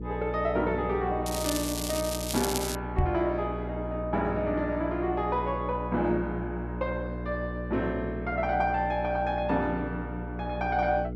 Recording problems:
hum; 60 Hz, harmonics up to 480 Hz, SNR 6 dB
crackle; from 1.5 to 3 s; loose cable, SNR 4 dB
knock on the microphone; at 3 s; peak +7 dB vs average level

